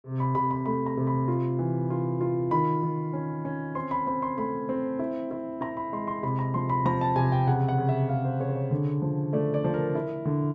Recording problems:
none

